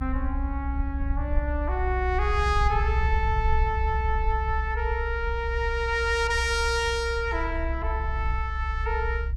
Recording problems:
rumble; below 66 Hz, strongest tone 64 Hz, SNR 2 dB

